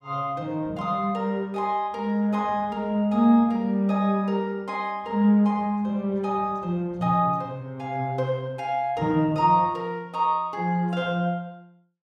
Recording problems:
none

